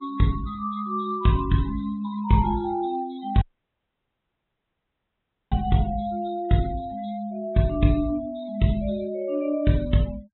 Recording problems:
treble missing; nothing above 3.9 kHz
denoising artefacts; signal-to-artefact ratio 23 dB
audio cutting out; at 3.5 s for 2 s

